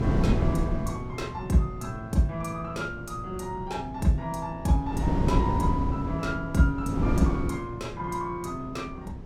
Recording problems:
wind noise; below 250 Hz, SNR 0 dB

